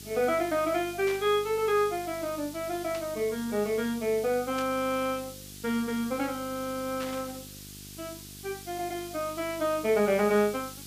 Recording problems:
electrical hum; 50 Hz, harmonics up to 800 Hz, SNR 20 dB
background hiss; slope +6 dB per octave, SNR 15 dB
static burst; 4 times, first at 1 s; peak -8 dB vs average level

